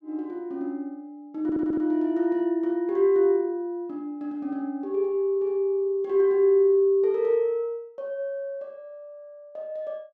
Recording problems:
audio stuttering; at 1.5 s

